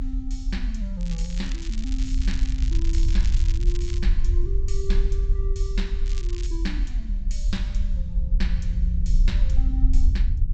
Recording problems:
low-pass filter; nothing above 8 kHz
rumble; below 50 Hz, SNR -10 dB
crackle; from 1 to 4 s and at 6 s; loose cable, SNR 7 dB

